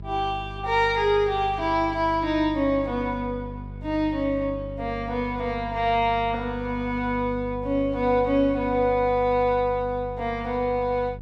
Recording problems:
hum; 50 Hz, harmonics up to 450 Hz, SNR 13 dB

